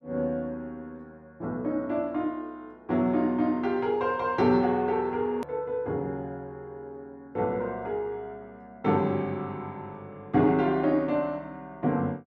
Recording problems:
click at an edit; at 5.5 s

